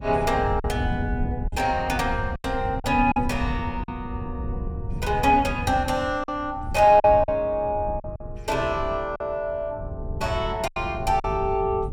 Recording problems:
wind on the microphone; below 120 Hz, SNR 9 dB
packet loss; 5% of the sound replaced, filled with silence

